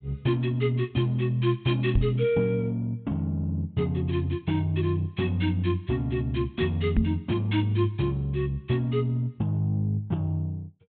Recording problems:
low-pass filter; nothing above 4 kHz
knock on the microphone; at 2 s and at 7 s; peak +7 dB vs average level

